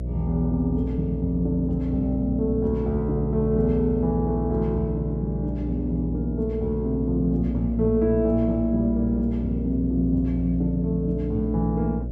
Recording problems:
hum; 60 Hz, harmonics up to 600 Hz, SNR 6 dB

